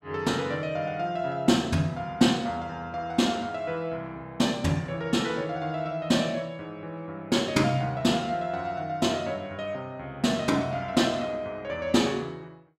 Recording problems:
none

